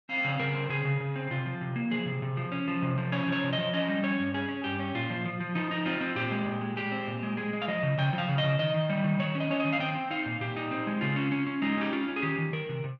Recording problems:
none

